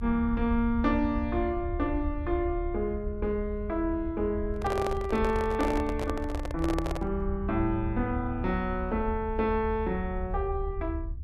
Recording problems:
low-frequency rumble; below 76 Hz, strongest tone 36 Hz, SNR 7 dB
handling noise; from 4.5 to 7 s; peak 0 dB vs average level

